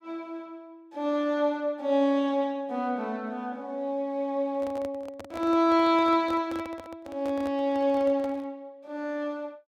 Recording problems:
microphone handling noise; from 4.5 to 8.5 s; peak -9 dB vs average level

